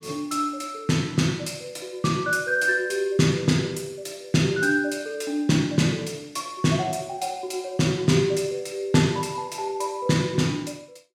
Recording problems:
none

